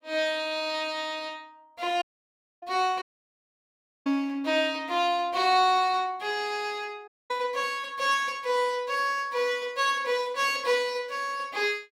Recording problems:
dropout; at 2 s for 0.5 s, at 3 s for 1 s and at 7 s

